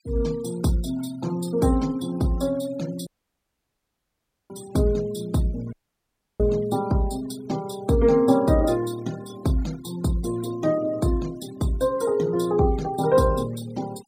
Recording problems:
denoising artefacts; signal-to-artefact ratio 21 dB
dropout; at 3 s for 1.5 s and at 5.5 s for 0.5 s

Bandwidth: 16 kHz